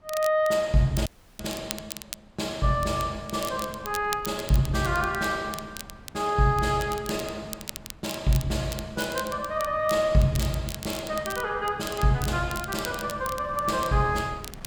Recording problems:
wind noise; below 540 Hz, SNR 20 dB
crackle; vinyl, SNR 13 dB
dropout; at 1 s

